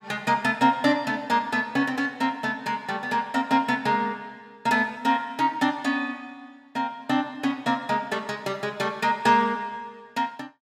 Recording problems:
none

